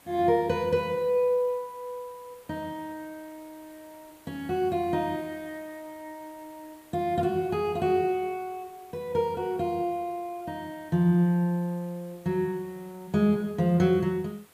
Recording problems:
background hiss; slope -3 dB per octave, SNR 27 dB

